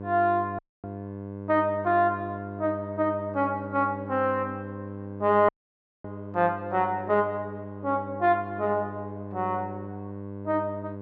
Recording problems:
electrical hum; 50 Hz, harmonics up to 1.1 kHz, SNR 11 dB
dropout; at 0.5 s and at 5.5 s for 0.5 s

